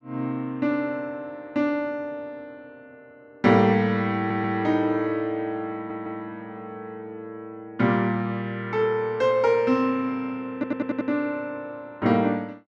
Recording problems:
audio stuttering; at 4 s, at 5.5 s and at 11 s

